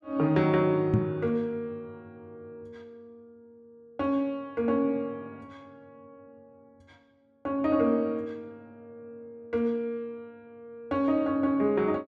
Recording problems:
microphone thump; at 1 s; peak +6 dB vs average level

